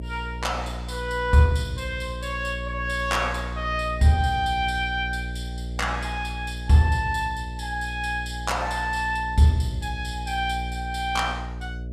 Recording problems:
hum; 60 Hz, harmonics up to 540 Hz, SNR 9 dB

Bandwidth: 14.5 kHz